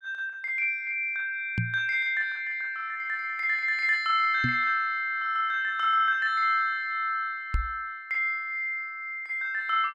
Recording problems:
microphone bump; at 1.5 s, at 4.5 s and at 7.5 s; peak +2 dB vs average level

